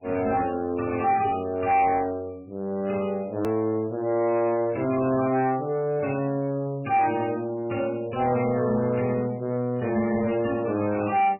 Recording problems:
lossy compression; MP3, log-spectral distance 3 dB, nothing above 2.4 kHz
distorted audio; soft clipping, signal-to-distortion ratio 12 dB
click at an edit; at 3.5 s

